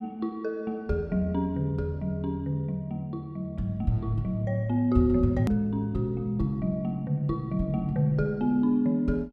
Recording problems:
edit click; at 5.5 s

